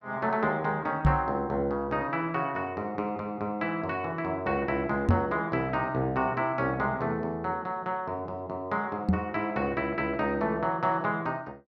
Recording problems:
microphone thump; at 1 s, at 5 s and at 9 s; peak +10 dB vs average level

